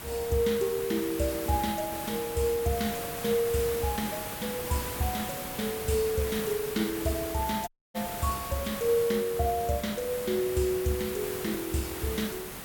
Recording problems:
hiss; slope -3 dB per octave, SNR 6 dB
audio cutting out; at 7.5 s

